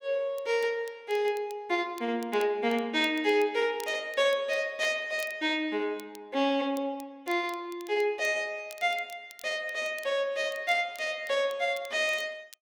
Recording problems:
crackling; vinyl, SNR 23 dB

